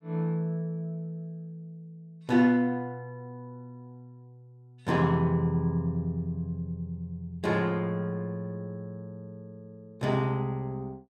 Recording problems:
none

